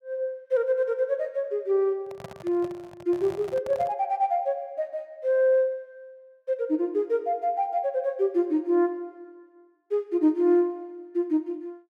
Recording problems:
microphone handling noise; from 2 to 4 s; peak -9 dB vs average level

